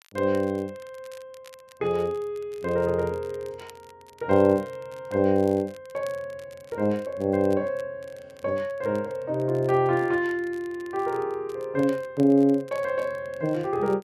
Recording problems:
crackling; vinyl, SNR 28 dB

